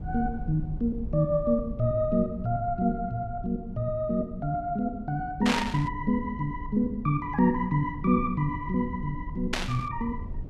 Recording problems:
rumble; below 94 Hz, SNR 12 dB
burst of static; at 5.5 s and at 9.5 s; peak +4 dB vs average level

